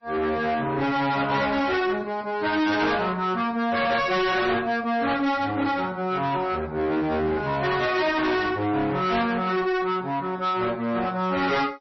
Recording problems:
lossy compression; AAC, then MP3, log-spectral distance 3 dB, nothing above 5.7 kHz
distorted audio; soft clipping, signal-to-distortion ratio 8 dB

